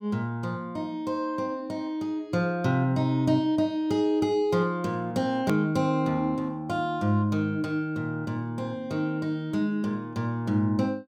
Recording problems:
click at an edit; at 5.5 s

